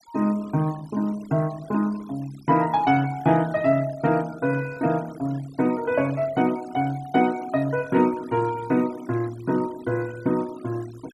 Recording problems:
denoising artefacts; signal-to-artefact ratio 21 dB

